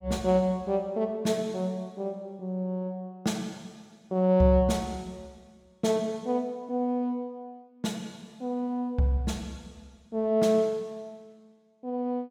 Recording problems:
none

